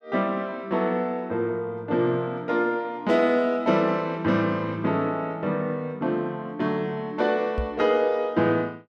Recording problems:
knock on the microphone; at 7.5 s; peak -1 dB vs average level

